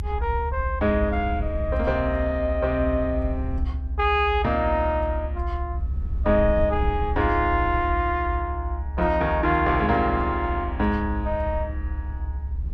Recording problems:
low-frequency rumble; below 72 Hz, strongest tone 70 Hz, SNR 5 dB

